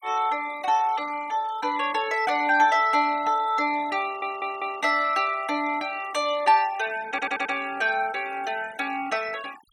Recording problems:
denoising artefacts; signal-to-artefact ratio 19 dB
stutter; at 4 s and at 7 s

